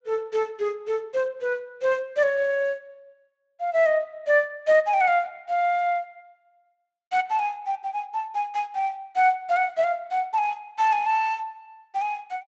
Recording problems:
lossy compression; Speex, log-spectral distance 2 dB

